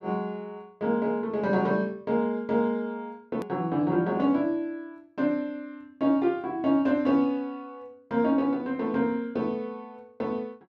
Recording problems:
edit click; at 3.5 s

